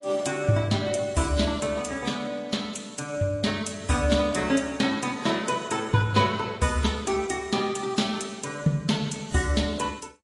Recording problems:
codec artefacts; AAC, then MP3, log-spectral distance 4 dB

